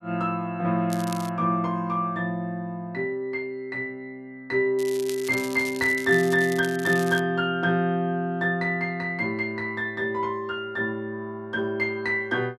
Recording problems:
crackle; at 1 s and from 5 to 7 s; loose cable, SNR 14 dB

